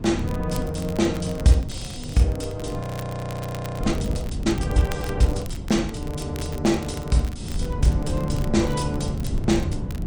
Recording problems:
codec artefacts; MP3, log-spectral distance 2 dB
wind noise; below 180 Hz, SNR 5 dB
crackle; vinyl, SNR 19 dB
frozen audio; at 3 s for 1 s

